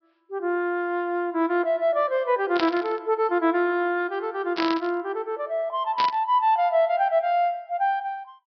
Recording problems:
low-pass filter; nothing above 5.5 kHz
burst of static; at 2.5 s, at 4.5 s and at 6 s; peak 0 dB vs average level

